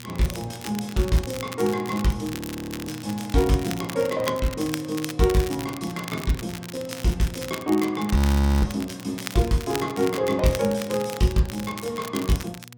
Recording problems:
hum; 60 Hz, harmonics up to 720 Hz, SNR 20 dB
crackling; vinyl, SNR 12 dB
audio freezing; at 2.5 s for 0.5 s and at 8 s

